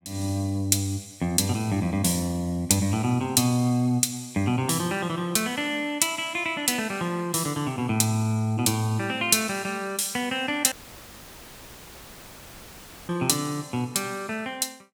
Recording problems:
audio cutting out; at 11 s for 2.5 s; filled with static

